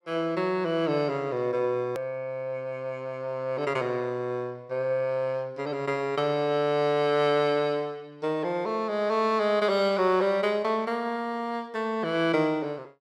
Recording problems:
click at an edit; at 2 s

